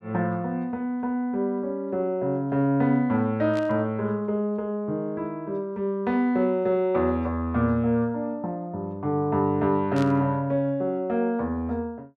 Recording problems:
burst of static; at 3.5 s and at 10 s; peak -10 dB vs average level

